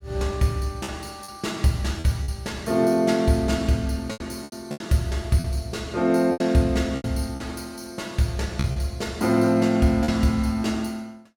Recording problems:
packet loss; 7% of the sound replaced, filled with repeated pitch periods

